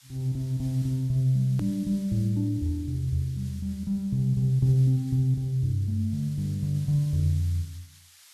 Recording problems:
hiss; SNR 25 dB
hard cut with a click; at 1.5 s

